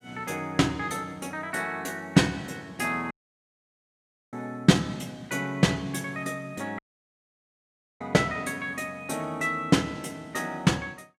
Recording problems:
audio cutting out; at 3 s for 1 s and at 7 s for 1 s

